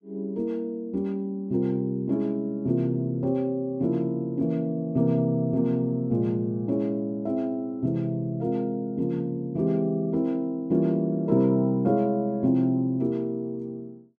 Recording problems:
none

